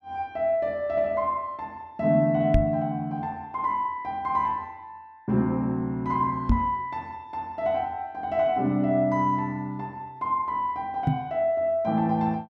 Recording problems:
microphone bump; at 2.5 s, at 6.5 s and at 11 s; peak +7 dB vs average level

